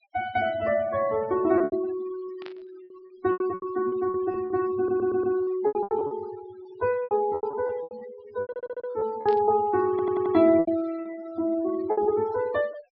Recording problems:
low-pass filter; nothing above 5.5 kHz
denoising artefacts; signal-to-artefact ratio 17 dB
packet loss; 13% of the sound replaced, filled with repeated pitch periods
static burst; at 2.5 s and at 9.5 s; peak -13 dB vs average level
audio stuttering; at 5 s, at 8.5 s and at 10 s

